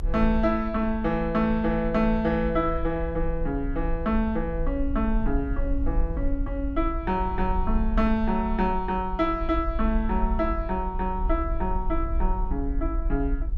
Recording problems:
low-frequency rumble; below 54 Hz, SNR 5 dB

